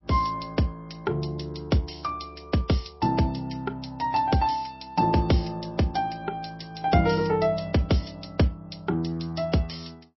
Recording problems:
codec artefacts; MP3, log-spectral distance 6 dB, nothing above 5.5 kHz

